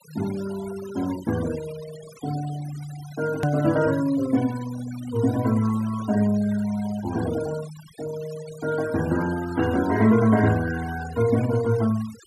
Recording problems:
noise reduction artefacts; signal-to-artefact ratio 16 dB
hard cut with a click; at 3.5 s

